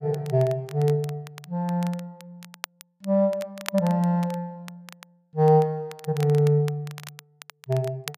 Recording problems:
crackle; vinyl, SNR 19 dB

